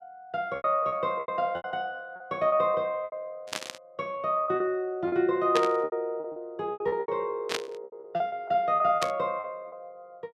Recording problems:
lost packets; 14% of the sound replaced, filled with repeated pitch periods
burst of static; 4 times, first at 3.5 s; peak +3 dB vs average level

